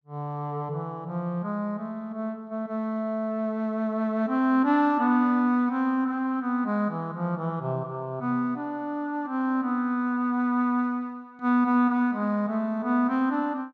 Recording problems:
none

